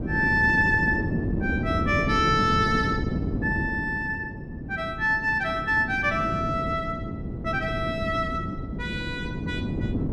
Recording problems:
wind on the microphone; below 310 Hz, SNR 5 dB

